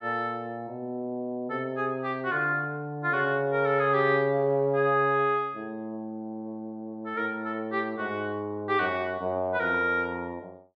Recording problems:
none

